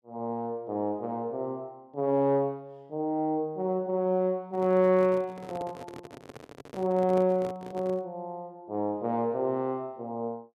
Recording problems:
microphone handling noise; from 4.5 to 8 s; peak -8 dB vs average level

